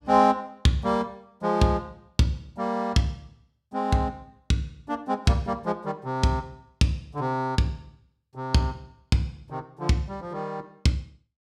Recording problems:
none

